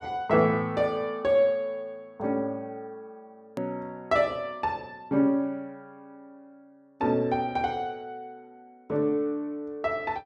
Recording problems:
edit click; at 3.5 s

